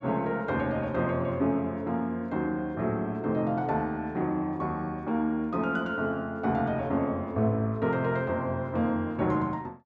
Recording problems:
none

